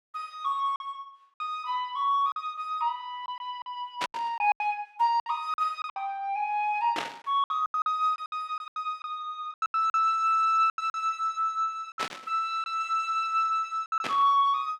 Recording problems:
lost packets; 10% of the sound replaced, filled with silence
burst of static; 4 times, first at 4 s; peak 0 dB vs average level

